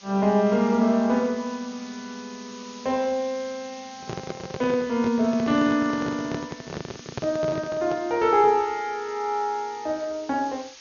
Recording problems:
lossy codec; MP2, log-spectral distance 10 dB, nothing above 6 kHz
background hiss; slope +3 dB per octave, SNR 20 dB
handling noise; from 4 to 8 s; peak -3 dB vs average level

